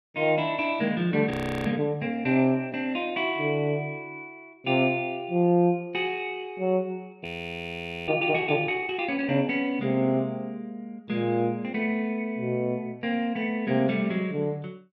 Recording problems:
frozen audio; at 1.5 s and at 7 s for 1 s

